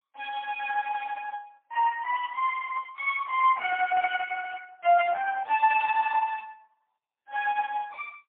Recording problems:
telephone audio; 500 Hz to 2.9 kHz, AMR-NB, then MP3

